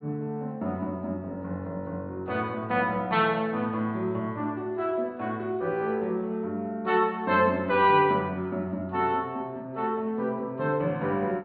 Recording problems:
treble missing; nothing above 4.6 kHz

